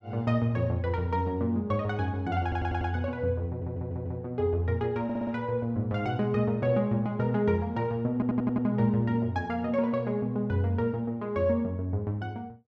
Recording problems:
stutter; 4 times, first at 2.5 s

